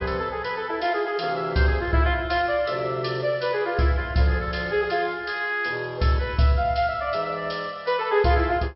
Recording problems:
treble cut off; nothing above 5.5 kHz

